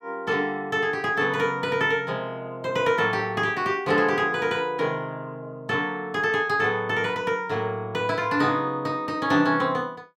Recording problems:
none

